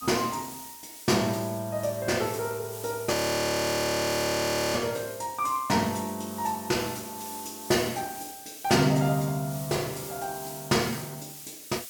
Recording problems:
background hiss; slope +4 dB per octave, SNR 13 dB
audio freezing; at 3 s for 1.5 s

